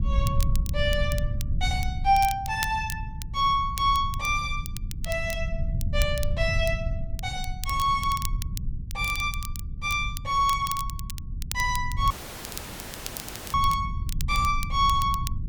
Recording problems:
low-frequency rumble; below 98 Hz, SNR 6 dB
crackle; vinyl, SNR 13 dB
audio cutting out; at 12 s for 1.5 s

